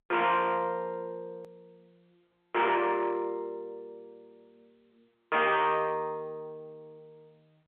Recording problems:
phone line; 280 Hz to 3.5 kHz, G.711
distorted audio; hard clipping, signal-to-distortion ratio 8 dB
click at an edit; at 1.5 s

